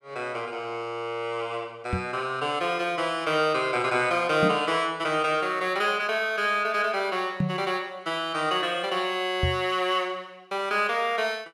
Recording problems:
knock on the microphone; 4 times, first at 2 s; peak +3 dB vs average level

